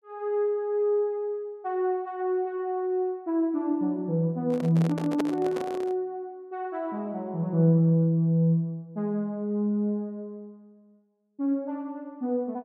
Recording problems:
microphone handling noise; from 4.5 to 6 s; peak +1 dB vs average level

